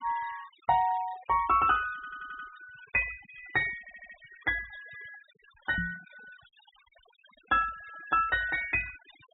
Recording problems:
low-pass filter; nothing above 4 kHz
noise reduction artefacts; signal-to-artefact ratio 20 dB
audio stuttering; at 2 s and at 4 s
knock on the microphone; at 6 s; peak -3 dB vs average level

